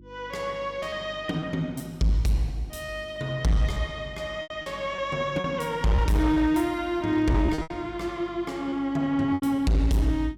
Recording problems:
distorted audio; hard clipping, signal-to-distortion ratio 11 dB
hum; 50 Hz, harmonics up to 350 Hz, SNR 23 dB
packet loss; 7% of the sound replaced, filled with repeated pitch periods

